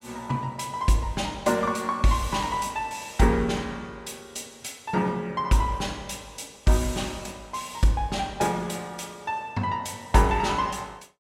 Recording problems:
none

